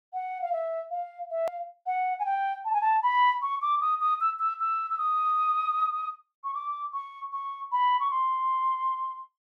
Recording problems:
edit click; at 1.5 s

